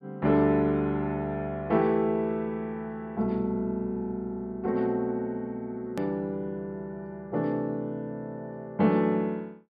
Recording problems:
treble cut off; nothing above 5.5 kHz
hard cut with a click; at 6 s

